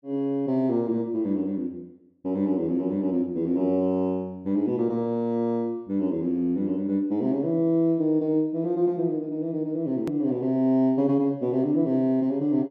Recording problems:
click at an edit; at 10 s

